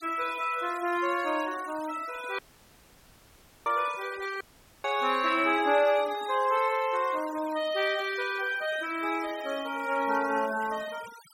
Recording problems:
noise reduction artefacts; signal-to-artefact ratio 18 dB
audio cutting out; at 2.5 s for 1.5 s and at 4.5 s

